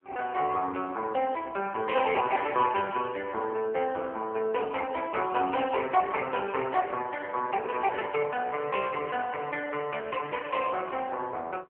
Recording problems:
telephone audio; 300 Hz to 3 kHz, AMR-NB

